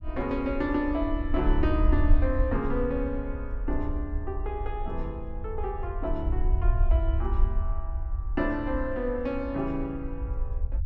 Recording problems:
low-frequency rumble; below 64 Hz, SNR 0 dB

